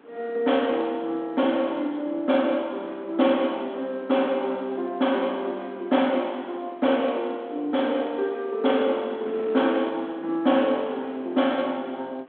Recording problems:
telephone audio; 220 Hz to 3.6 kHz, G.726
wind on the microphone; below 930 Hz, SNR 24 dB

